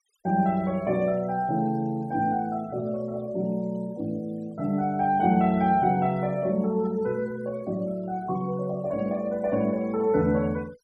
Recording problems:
denoising artefacts; signal-to-artefact ratio 27 dB

